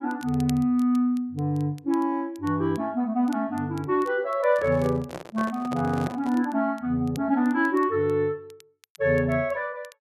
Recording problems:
crackle; vinyl, SNR 27 dB
microphone handling noise; from 4.5 to 6.5 s; peak -5 dB vs average level

